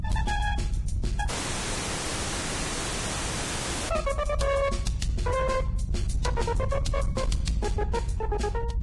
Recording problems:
lossy compression; Vorbis, log-spectral distance 6 dB, nothing above 10.7 kHz
distorted audio; hard clipping, signal-to-distortion ratio 11 dB
low-frequency rumble; below 96 Hz, SNR 1 dB
audio cutting out; at 1.5 s for 2.5 s

